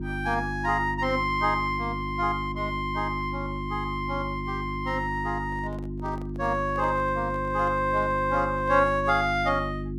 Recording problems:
hum; 50 Hz, harmonics up to 350 Hz, SNR 7 dB
handling noise; from 5.5 to 9 s; peak -12 dB vs average level

